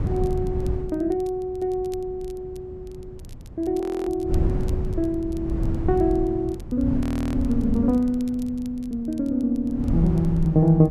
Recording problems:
wind noise; below 140 Hz, SNR 4 dB
crackling; vinyl, SNR 29 dB
audio freezing; at 4 s and at 7 s

